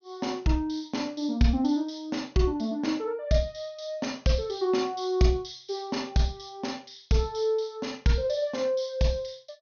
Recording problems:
treble missing; nothing above 6.5 kHz

